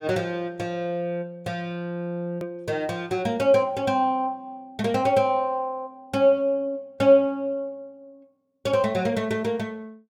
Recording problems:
click at an edit; at 2.5 s

